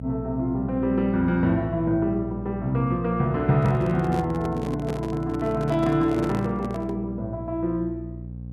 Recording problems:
mains hum; 60 Hz, harmonics up to 540 Hz, SNR 11 dB
handling noise; from 3.5 to 7 s; peak -4 dB vs average level

